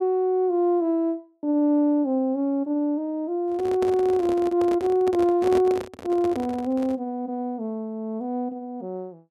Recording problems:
handling noise; from 3.5 to 7 s; peak -3 dB vs average level

